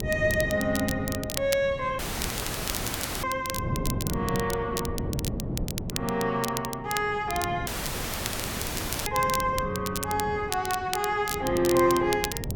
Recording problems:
wind on the microphone; below 280 Hz, SNR 8 dB
crackling; vinyl, SNR 8 dB
dropout; at 2 s for 1 s and at 7.5 s for 1.5 s

